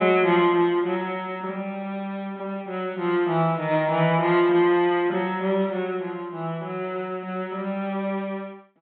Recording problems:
treble cut off; nothing above 4 kHz

